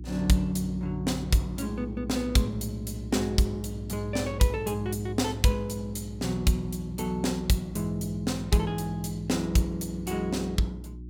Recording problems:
hum; 60 Hz, harmonics up to 360 Hz, SNR 12 dB

